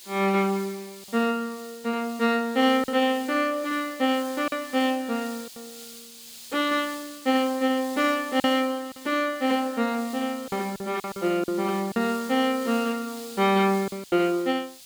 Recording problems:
hiss; SNR 17 dB
lost packets; 4% of the sound replaced, filled with silence

